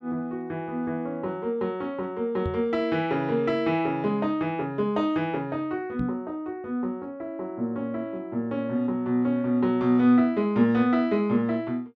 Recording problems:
microphone bump; at 2.5 s and at 6 s; peak -2 dB vs average level

